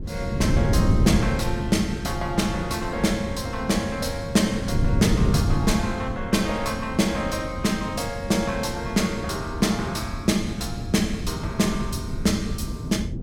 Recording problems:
wind on the microphone; below 180 Hz, SNR 3 dB

